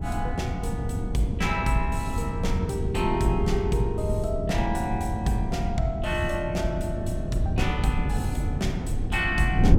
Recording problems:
wind on the microphone; below 160 Hz, SNR 1 dB

